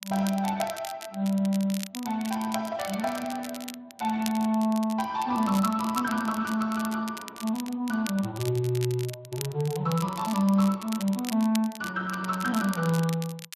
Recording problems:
codec artefacts; Speex, log-spectral distance 2 dB
crackling; vinyl, SNR 13 dB

